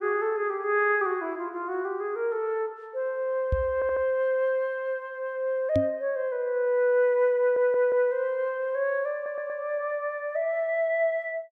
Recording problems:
knock on the microphone; at 3.5 s and at 6 s; peak +2 dB vs average level
stutter; at 3.5 s, at 7.5 s and at 9 s

